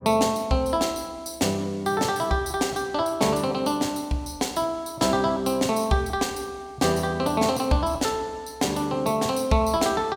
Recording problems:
none

